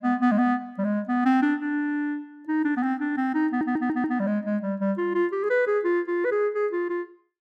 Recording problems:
stutter; at 3.5 s

